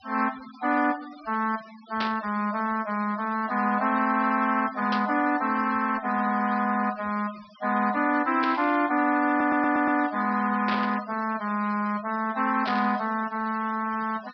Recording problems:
treble missing; nothing above 5.5 kHz
noise reduction artefacts; signal-to-artefact ratio 19 dB
static burst; 5 times, first at 2 s; peak -2 dB vs average level
stutter; at 9.5 s

